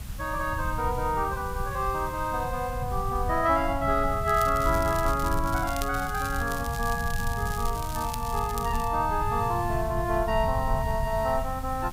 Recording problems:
background hiss; slope -1 dB per octave, SNR 18 dB
rumble; below 110 Hz, SNR 7 dB
crackling; from 4.5 to 6.5 s and from 6.5 to 9 s; loose cable, SNR 13 dB

